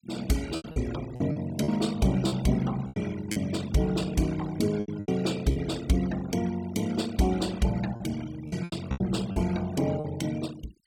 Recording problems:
denoising artefacts; signal-to-artefact ratio 17 dB
packet loss; 9% of the sound replaced, filled with repeated pitch periods

